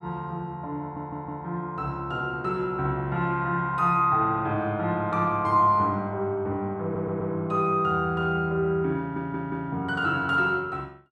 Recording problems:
audio stuttering; at 1 s, at 7 s and at 9 s

